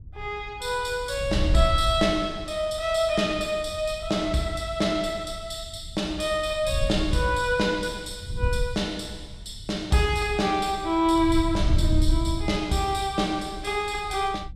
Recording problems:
wind noise; below 86 Hz, SNR 7 dB

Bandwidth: 14.5 kHz